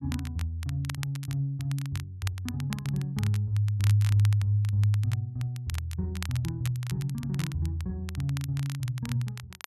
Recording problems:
crackle; vinyl, SNR 15 dB

